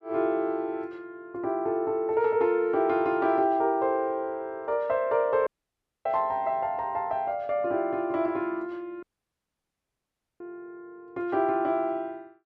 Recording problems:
audio cutting out; at 5.5 s for 0.5 s and at 9 s for 1.5 s

